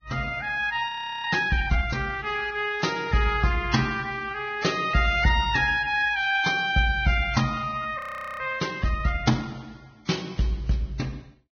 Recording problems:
lossy compression; Vorbis, log-spectral distance 3 dB, nothing above 6.3 kHz
audio freezing; at 1 s and at 8 s

